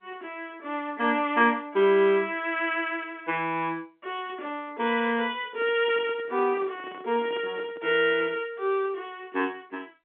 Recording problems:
phone line; 190 Hz to 3.6 kHz, G.711
microphone handling noise; from 5.5 to 8.5 s; peak -11 dB vs average level

